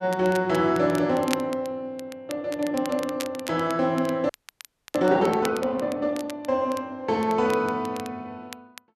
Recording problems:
crackle; vinyl, SNR 16 dB
audio freezing; at 4.5 s for 0.5 s

